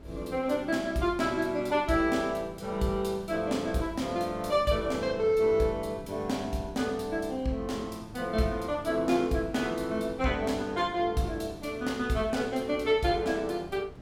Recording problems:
wind on the microphone; below 340 Hz, SNR 19 dB

